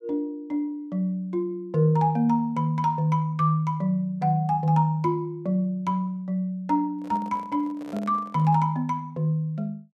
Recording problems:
microphone handling noise; from 7 to 8.5 s; peak -10 dB vs average level

